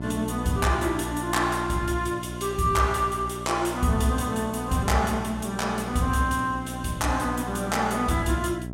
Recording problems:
hum; 60 Hz, harmonics up to 1 kHz, SNR 10 dB

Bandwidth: 16.5 kHz